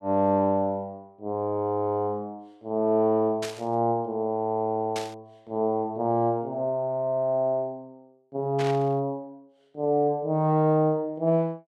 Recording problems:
burst of static; at 3.5 s, at 5 s and at 8.5 s; peak -5 dB vs average level

